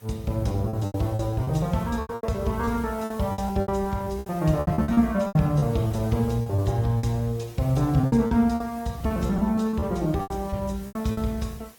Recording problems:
lossy compression; Opus, log-spectral distance 3 dB, nothing above 17.7 kHz
background hiss; slope -2 dB per octave, SNR 25 dB
packet loss; 15% of the sound replaced, filled with repeated pitch periods

